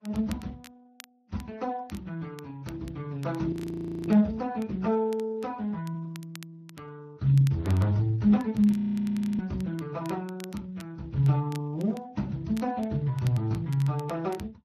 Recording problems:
codec artefacts; Vorbis, then Speex, log-spectral distance 2 dB, nothing above 13.7 kHz
crackling; vinyl, SNR 24 dB
frozen audio; at 3.5 s for 0.5 s and at 8.5 s for 0.5 s

